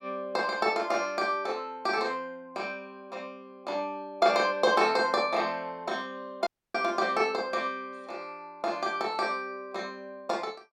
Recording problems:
audio cutting out; at 6.5 s

